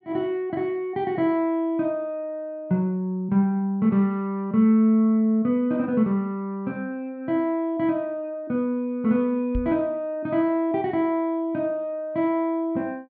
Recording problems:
low-pass filter; nothing above 5.5 kHz
microphone bump; at 9.5 s; peak -1 dB vs average level

